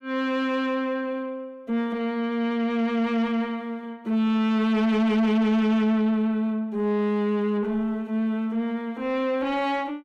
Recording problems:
distortion; soft clipping, signal-to-distortion ratio 7 dB

